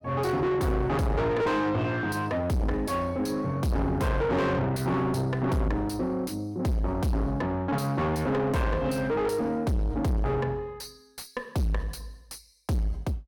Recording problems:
distortion; soft clipping, signal-to-distortion ratio 6 dB

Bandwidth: 17 kHz